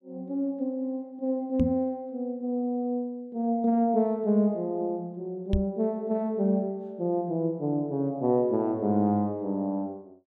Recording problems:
microphone bump; at 1.5 s and at 5.5 s; peak +5 dB vs average level

